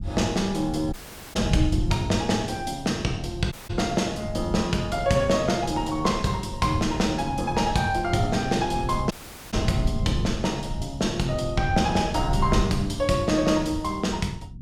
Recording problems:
low-frequency rumble; below 130 Hz, SNR 8 dB
audio cutting out; at 1 s, at 3.5 s and at 9 s

